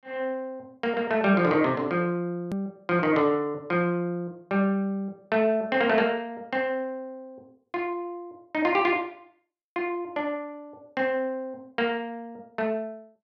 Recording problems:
hard cut with a click; at 2.5 s

